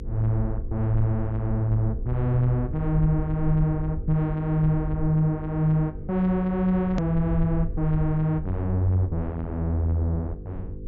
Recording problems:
treble cut off; nothing above 7.3 kHz
hum; 50 Hz, harmonics up to 500 Hz, SNR 15 dB
low-frequency rumble; below 68 Hz, SNR 11 dB
hard cut with a click; at 7 s

